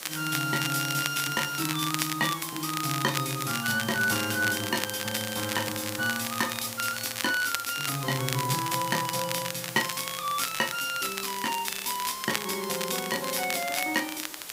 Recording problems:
background hiss; slope 0 dB per octave, SNR 9 dB
crackle; vinyl, SNR 5 dB

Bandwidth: 15.5 kHz